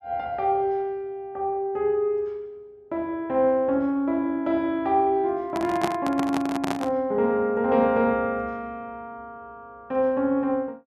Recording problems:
microphone handling noise; from 5.5 to 7 s; peak +2 dB vs average level

